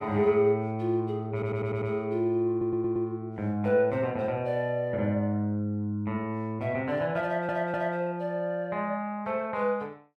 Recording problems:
stutter; at 1.5 s, at 2.5 s and at 7 s

